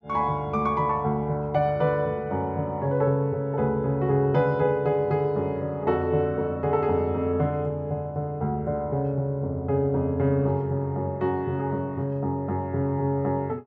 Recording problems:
treble cut off; nothing above 7.5 kHz

